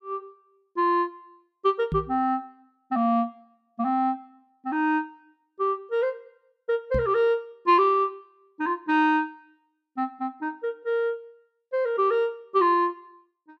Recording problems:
microphone thump; at 2 s and at 7 s; peak -1 dB vs average level

